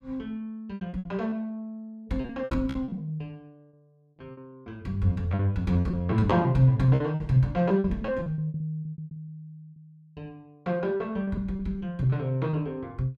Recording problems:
lost packets; 15% of the sound replaced, filled with repeated pitch periods

